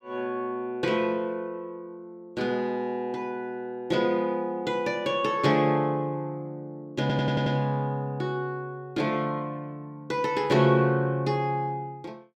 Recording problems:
stutter; at 7 s

